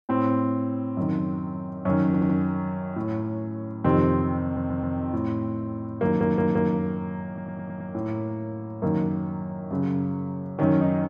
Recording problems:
stutter; 4 times, first at 2 s

